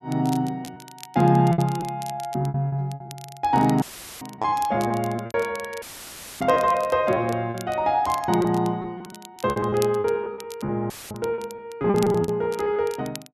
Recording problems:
crackle; vinyl, SNR 19 dB
lost packets; 13% of the sound replaced, filled with repeated pitch periods
audio cutting out; at 4 s, at 6 s for 0.5 s and at 11 s; filled with static

